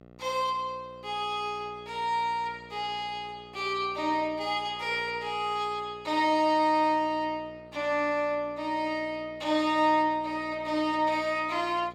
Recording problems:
hum; 60 Hz, harmonics up to 2 kHz, SNR 23 dB

